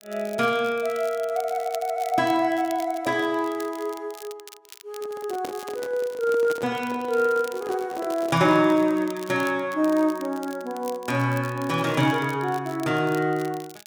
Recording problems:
crackling; vinyl, SNR 20 dB
microphone handling noise; from 5 to 8.5 s; peak -8 dB vs average level

